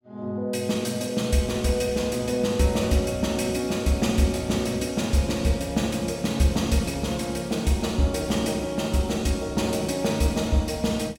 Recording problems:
none

